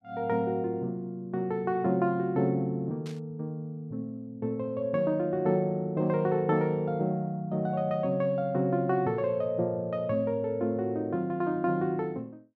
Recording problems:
burst of static; at 3 s; peak -14 dB vs average level

